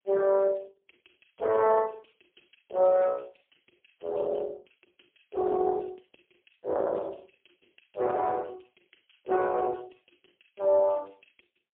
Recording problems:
phone line; 340 Hz to 3.7 kHz, AMR-NB, then MP3

